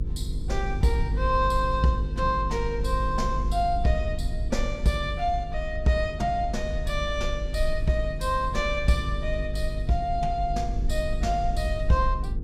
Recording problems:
hum; 50 Hz, harmonics up to 450 Hz, SNR 6 dB
rumble; below 62 Hz, SNR 7 dB

